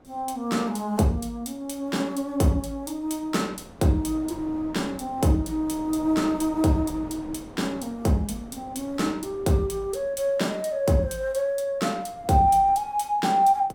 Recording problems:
wind noise; below 600 Hz, SNR 20 dB

